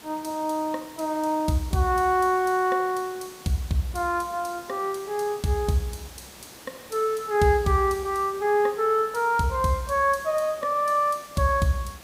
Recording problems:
background hiss; slope -3 dB per octave, SNR 20 dB

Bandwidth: 15.5 kHz